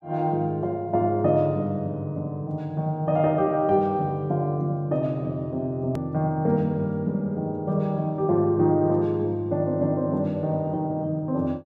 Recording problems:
edit click; at 6 s

